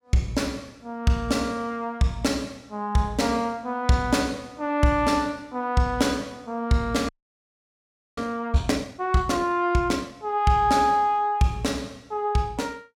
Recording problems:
audio freezing; at 7 s for 1 s

